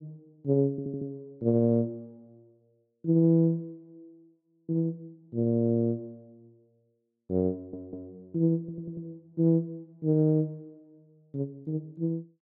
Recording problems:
stutter; at 0.5 s, at 7.5 s and at 8.5 s

